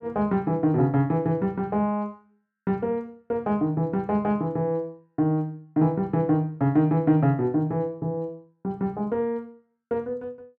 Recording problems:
none

